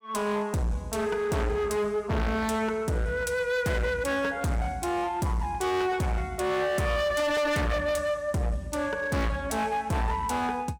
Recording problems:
distortion; hard clipping, uneven, signal-to-distortion ratio 6 dB

